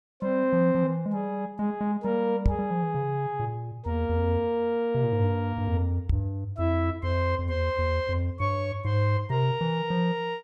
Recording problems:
microphone bump; at 2.5 s and at 6 s; peak +6 dB vs average level

